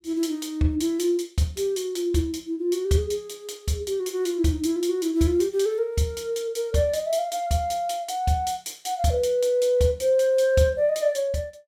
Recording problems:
none

